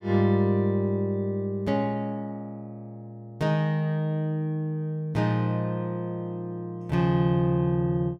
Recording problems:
none

